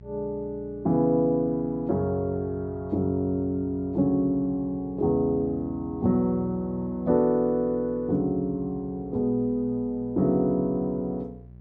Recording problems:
hum; 60 Hz, harmonics up to 600 Hz, SNR 20 dB

